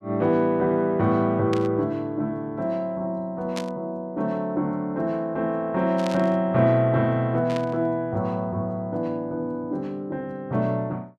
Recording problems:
static burst; 4 times, first at 1.5 s; peak -5 dB vs average level

